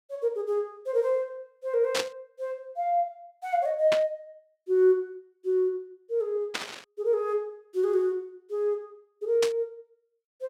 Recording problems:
burst of static; 4 times, first at 2 s; peak +3 dB vs average level

